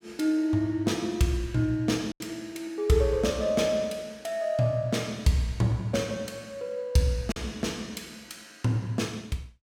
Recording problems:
packet loss; 1.3% of the sound replaced, filled with silence

